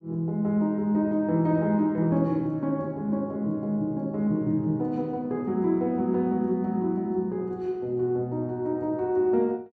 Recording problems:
none

